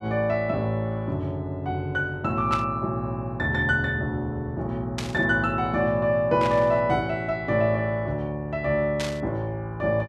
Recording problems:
static burst; 4 times, first at 2.5 s; peak -3 dB vs average level

